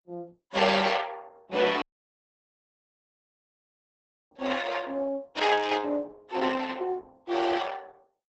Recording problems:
lossy compression; Opus, log-spectral distance 5 dB, nothing above 8 kHz
dropout; at 2 s for 2.5 s

